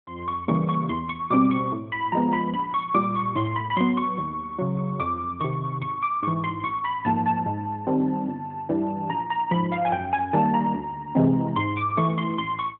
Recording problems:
phone line; 130 Hz to 3.3 kHz, AMR-NB

